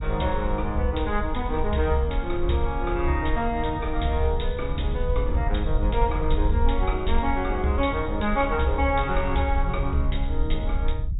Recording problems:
treble missing; nothing above 4 kHz
rumble; below 58 Hz, SNR 4 dB

